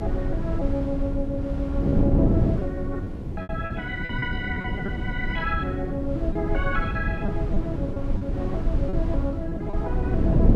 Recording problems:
mains hum; 50 Hz, harmonics up to 1.1 kHz, SNR 14 dB
background hiss; slope -6 dB per octave, SNR 25 dB
rumble; below 64 Hz, strongest tone 24 Hz, SNR 2 dB
wind noise; below 270 Hz, SNR -2 dB
lost packets; 6% of the sound replaced, filled with repeated pitch periods

